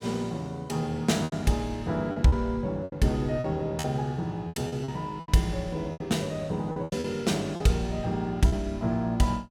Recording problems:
lost packets; 9% of the sound replaced, filled with repeated pitch periods

